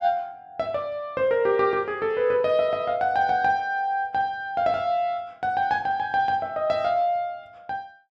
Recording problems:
none

